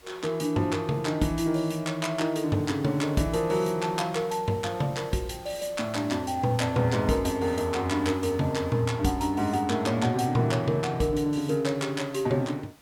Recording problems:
hiss; slope -3 dB per octave, SNR 25 dB

